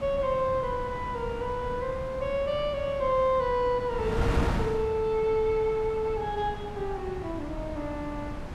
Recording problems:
wind on the microphone; below 430 Hz, SNR 7 dB

